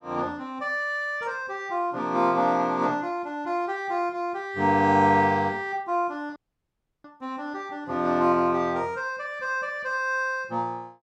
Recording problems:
audio cutting out; at 6.5 s for 0.5 s

